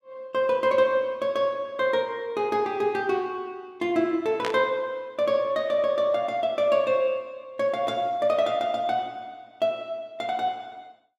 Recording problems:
static burst; at 4.5 s; peak 0 dB vs average level

